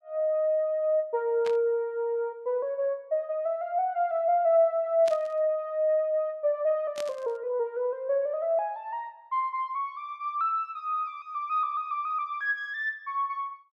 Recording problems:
static burst; at 1.5 s, at 5 s and at 7 s; peak -8 dB vs average level

